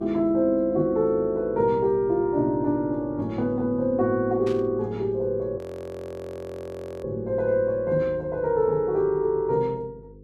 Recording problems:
hum; 50 Hz, harmonics up to 500 Hz, SNR 24 dB
burst of static; at 4.5 s; peak -13 dB vs average level
frozen audio; at 5.5 s for 1.5 s

